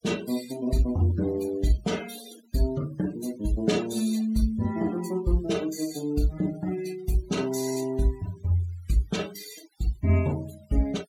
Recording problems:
denoising artefacts; signal-to-artefact ratio 18 dB

